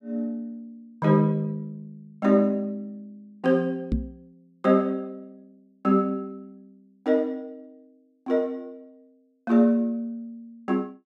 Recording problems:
microphone bump; at 4 s; peak +3 dB vs average level

